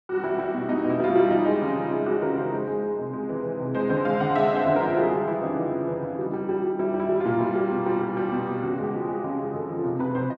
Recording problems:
none

